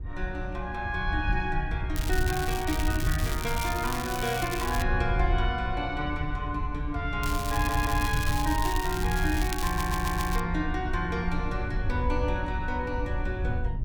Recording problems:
wind on the microphone; below 86 Hz, SNR 2 dB
crackling; from 2 to 5 s and from 7 to 10 s; loose cable, SNR 7 dB
audio stuttering; at 7.5 s and at 9.5 s

